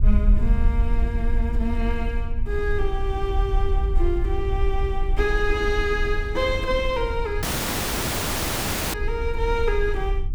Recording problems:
hum; 60 Hz, harmonics up to 840 Hz, SNR 22 dB
low-frequency rumble; below 58 Hz, SNR 0 dB
audio cutting out; at 7.5 s for 1.5 s

